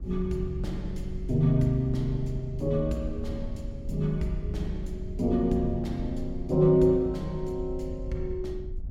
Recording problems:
wind on the microphone; below 76 Hz, SNR 10 dB

